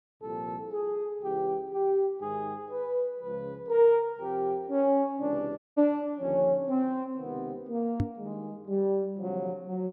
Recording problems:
audio cutting out; at 5.5 s
microphone thump; at 8 s; peak +4 dB vs average level

